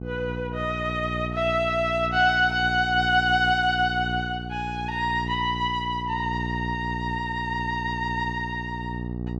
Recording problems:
hum; 60 Hz, harmonics up to 840 Hz, SNR 8 dB

